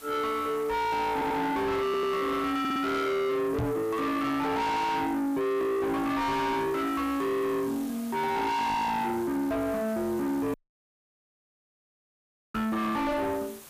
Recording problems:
distortion; soft clipping, signal-to-distortion ratio 5 dB
background hiss; slope -3 dB per octave, SNR 19 dB
audio stuttering; at 1 s, at 2 s and at 2.5 s
knock on the microphone; at 3.5 s and at 13 s; peak +6 dB vs average level
dropout; at 11 s for 2 s

